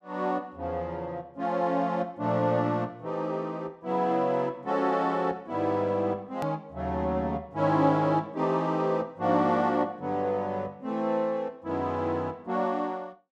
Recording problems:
edit click; at 6.5 s

